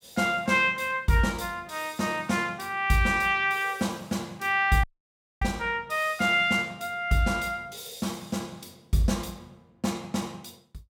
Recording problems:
dropout; at 5 s for 0.5 s

